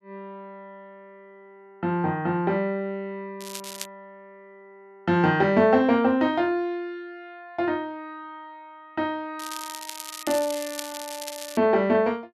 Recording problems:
crackling; at 3.5 s and from 9.5 to 12 s; loose cable, SNR 12 dB

